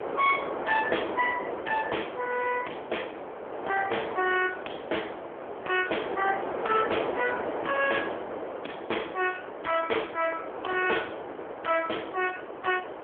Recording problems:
telephone audio; 320 Hz to 3.3 kHz, AMR-NB
distorted audio; hard clipping, signal-to-distortion ratio 11 dB
wind noise; below 930 Hz, SNR 6 dB

